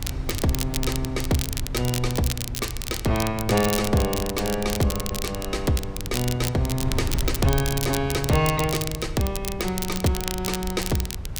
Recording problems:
wind on the microphone; below 100 Hz, SNR 8 dB
crackling; vinyl, SNR 6 dB

